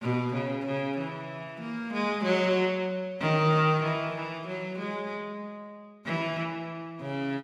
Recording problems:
none

